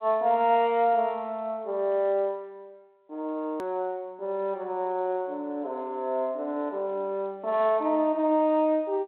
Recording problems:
phone line; 240 Hz to 3.5 kHz, G.726
click at an edit; at 3.5 s

